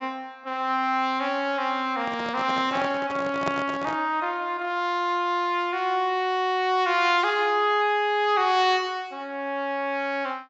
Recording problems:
low-pass filter; nothing above 8 kHz
microphone handling noise; from 2 to 4 s; peak 0 dB vs average level

